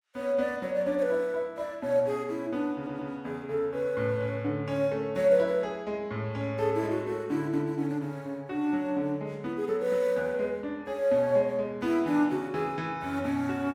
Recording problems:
stutter; at 3 s

